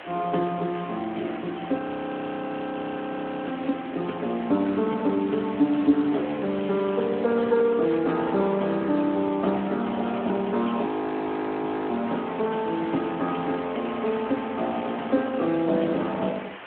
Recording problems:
phone line; 220 Hz to 3.6 kHz, Speex
background hiss; SNR 15 dB
wind on the microphone; below 1.7 kHz, SNR 23 dB
frozen audio; at 2 s for 1.5 s and at 11 s for 1 s

